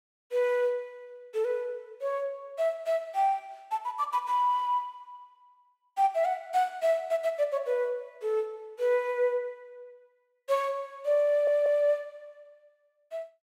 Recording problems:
stutter; at 11 s

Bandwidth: 16 kHz